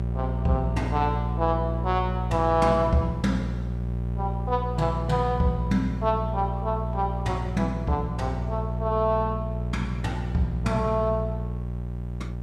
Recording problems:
electrical hum; 60 Hz, harmonics up to 780 Hz, SNR 3 dB
hiss; slope -7 dB per octave, SNR 30 dB

